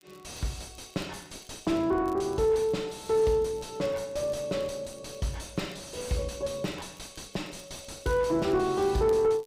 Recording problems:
distorted audio; soft clipping, signal-to-distortion ratio 7 dB
crackling; vinyl, SNR 27 dB

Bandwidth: 15.5 kHz